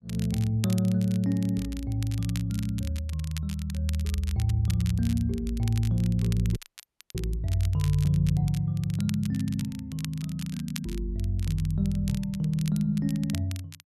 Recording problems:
crackle; vinyl, SNR 16 dB
dropout; at 6.5 s for 0.5 s

